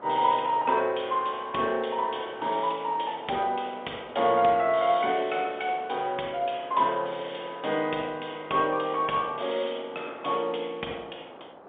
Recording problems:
phone line; 260 Hz to 3.6 kHz, G.711
wind noise; below 1 kHz, SNR 20 dB

